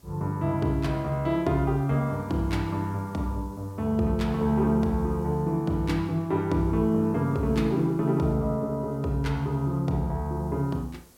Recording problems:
hiss; SNR 30 dB

